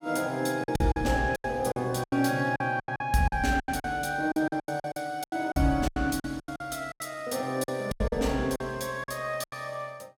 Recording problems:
lost packets; 16% of the sound replaced, filled with silence

